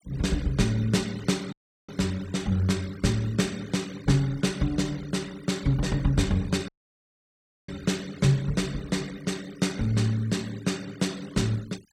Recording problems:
noise reduction artefacts; signal-to-artefact ratio 20 dB
dropout; at 1.5 s and at 6.5 s for 1 s

